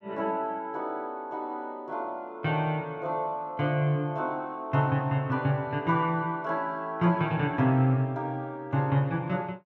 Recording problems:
none

